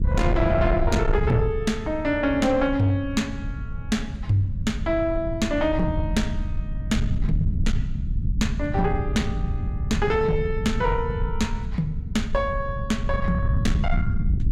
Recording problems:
distorted audio; soft clipping, signal-to-distortion ratio 12 dB
rumble; below 120 Hz, SNR 3 dB

